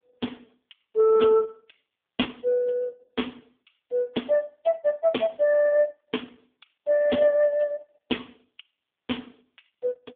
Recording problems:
phone line; 260 Hz to 3.4 kHz, AMR-NB

